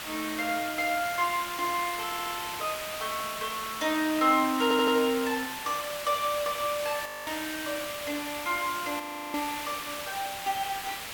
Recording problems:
background hiss; SNR 6 dB
stutter; at 2 s and at 4.5 s
audio freezing; at 7 s and at 9 s

